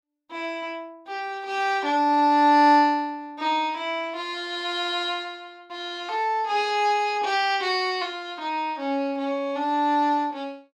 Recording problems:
none

